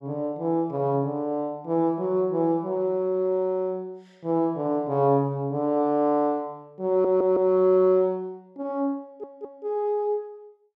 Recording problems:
stutter; at 7 s and at 9 s

